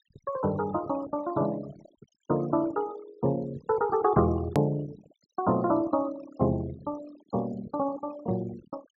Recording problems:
treble missing; nothing above 7.4 kHz
noise reduction artefacts; signal-to-artefact ratio 19 dB
click at an edit; at 4.5 s

